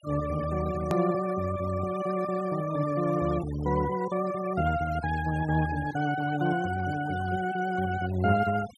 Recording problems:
denoising artefacts; signal-to-artefact ratio 16 dB
hard cut with a click; at 1 s

